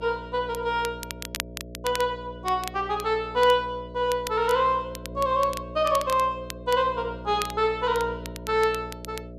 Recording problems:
hum; 60 Hz, harmonics up to 660 Hz, SNR 15 dB
crackle; vinyl, SNR 14 dB

